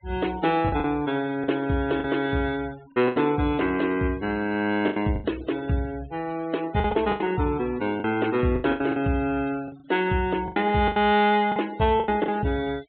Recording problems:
treble missing; nothing above 4 kHz
denoising artefacts; signal-to-artefact ratio 20 dB
lost packets; 9% of the sound replaced, filled with the last packet

